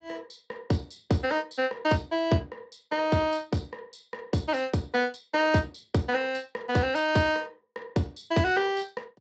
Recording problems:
codec artefacts; Speex, log-spectral distance 5 dB, nothing above 7.6 kHz

